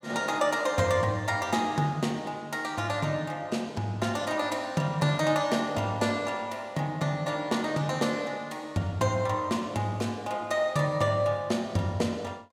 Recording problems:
none

